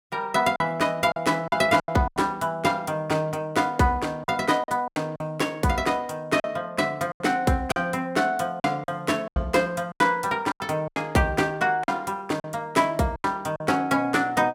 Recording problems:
lost packets; 9% of the sound replaced, filled with silence

